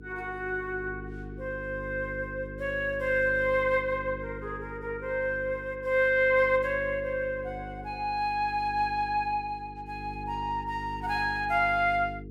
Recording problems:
hum; 50 Hz, harmonics up to 450 Hz, SNR 14 dB

